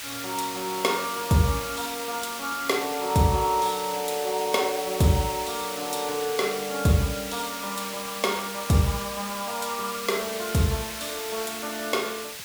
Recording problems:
hiss; SNR 7 dB

